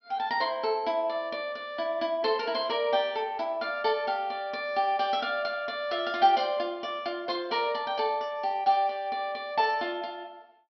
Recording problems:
treble cut off; nothing above 5.5 kHz

